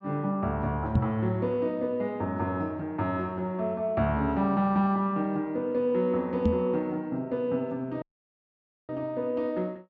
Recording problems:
low-pass filter; nothing above 8 kHz
microphone thump; at 1 s and at 6.5 s; peak +8 dB vs average level
audio cutting out; at 8 s for 1 s

